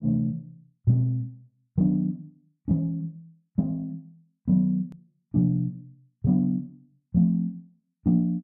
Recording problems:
click at an edit; at 5 s

